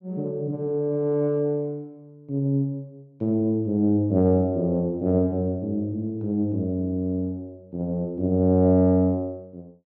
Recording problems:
none

